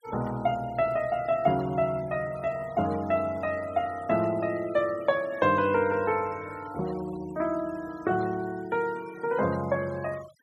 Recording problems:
noise reduction artefacts; signal-to-artefact ratio 21 dB

